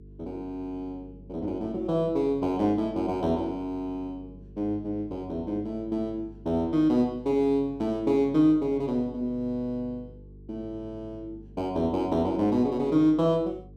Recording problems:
hum; 50 Hz, harmonics up to 450 Hz, SNR 21 dB

